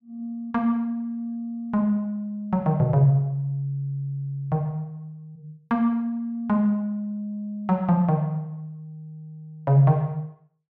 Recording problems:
none

